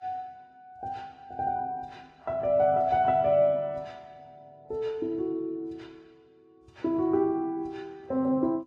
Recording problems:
codec artefacts; Vorbis, log-spectral distance 2 dB

